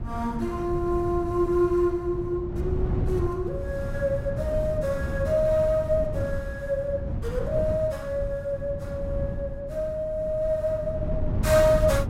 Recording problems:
wind noise; below 160 Hz, SNR 5 dB

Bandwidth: 16 kHz